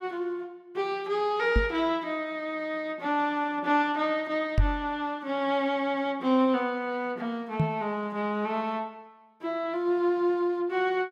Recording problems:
microphone thump; at 1.5 s, at 4.5 s and at 7.5 s; peak +7 dB vs average level

